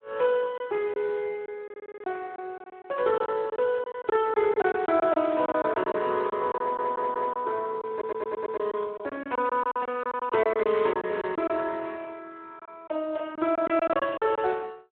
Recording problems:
phone line; 280 Hz to 2.8 kHz, Speex
packet loss; 11% of the sound replaced, filled with silence
stutter; at 1.5 s, at 6.5 s and at 8 s

